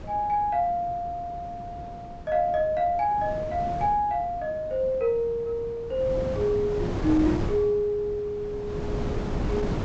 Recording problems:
treble cut off; nothing above 8 kHz
wind on the microphone; below 390 Hz, SNR 9 dB

